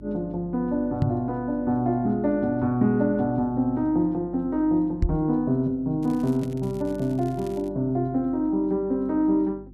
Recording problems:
hum; 50 Hz, harmonics up to 350 Hz, SNR 20 dB
knock on the microphone; at 1 s and at 5 s; peak +4 dB vs average level
crackling; from 6 to 7.5 s; loose cable, SNR 27 dB

